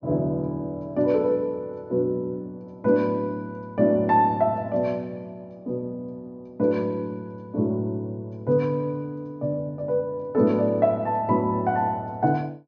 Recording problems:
treble cut off; nothing above 6.5 kHz

